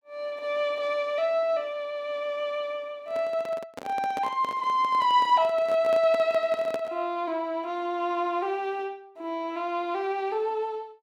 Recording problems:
handling noise; from 3 to 7 s; peak -3 dB vs average level

